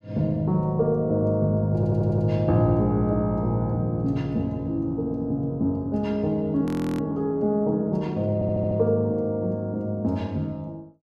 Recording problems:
stutter; at 2 s and at 8.5 s
frozen audio; at 6.5 s

